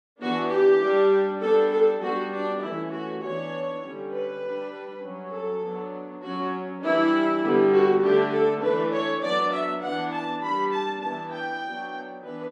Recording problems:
none

